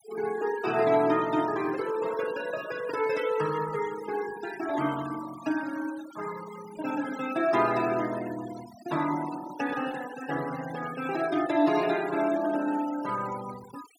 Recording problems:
noise reduction artefacts; signal-to-artefact ratio 15 dB

